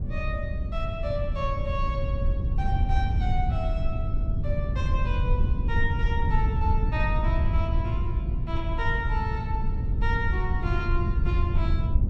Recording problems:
wind on the microphone; below 92 Hz, SNR -5 dB

